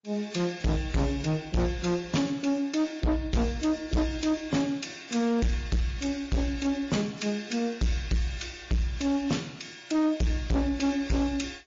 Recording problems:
codec artefacts; MP3, then AAC, log-spectral distance 4 dB
distorted audio; soft clipping, signal-to-distortion ratio 6 dB

